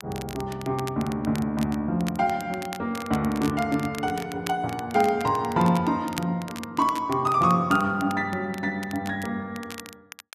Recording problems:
crackling; vinyl, SNR 16 dB

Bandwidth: 14 kHz